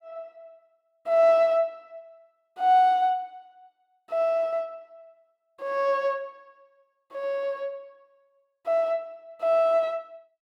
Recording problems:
none

